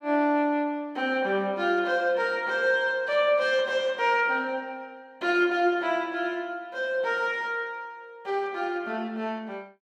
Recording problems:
none

